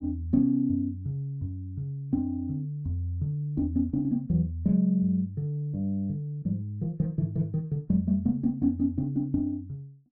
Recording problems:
none

